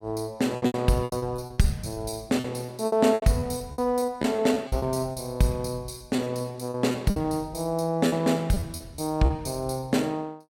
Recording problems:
lost packets; 14% of the sound replaced, filled with repeated pitch periods

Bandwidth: 17 kHz